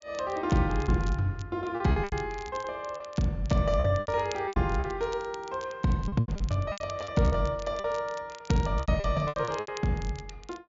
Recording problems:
treble cut off; nothing above 7.2 kHz
crackle; vinyl, SNR 20 dB
packet loss; 12% of the sound replaced, filled with repeated pitch periods

